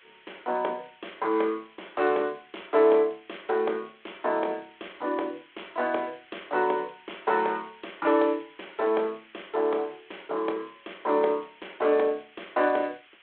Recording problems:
phone line; 300 Hz to 3.5 kHz, G.726
background hiss; SNR 27 dB

